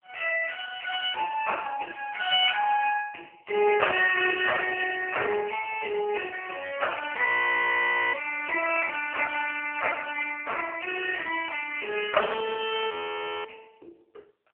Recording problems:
telephone audio; 320 Hz to 3.1 kHz, AMR-NB
frozen audio; at 7.5 s for 1 s and at 13 s for 0.5 s

